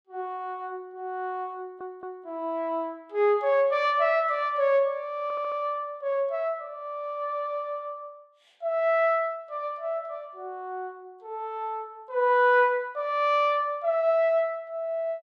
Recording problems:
audio stuttering; at 1.5 s and at 5 s

